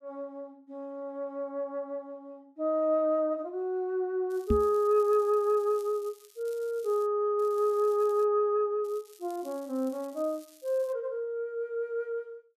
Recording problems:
crackle; from 4.5 to 7 s, at 7.5 s and from 9 to 11 s; loose cable, SNR 26 dB
microphone thump; at 4.5 s; peak +5 dB vs average level

